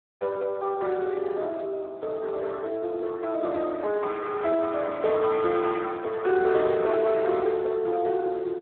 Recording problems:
telephone audio; 320 Hz to 3.8 kHz, Speex

